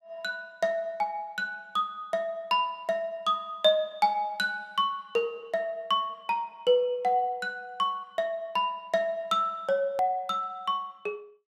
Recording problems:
edit click; at 10 s

